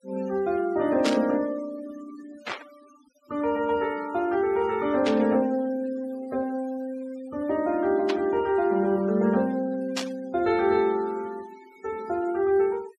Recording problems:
noise reduction artefacts; signal-to-artefact ratio 22 dB
static burst; 5 times, first at 1 s; peak 0 dB vs average level

